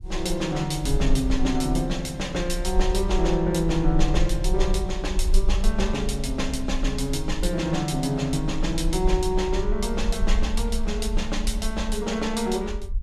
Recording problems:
rumble; below 46 Hz, SNR 4 dB

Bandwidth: 14 kHz